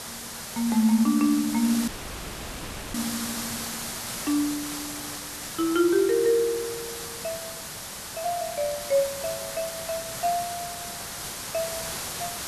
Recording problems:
background hiss; slope -1 dB per octave, SNR 7 dB
dropout; at 2 s for 1 s

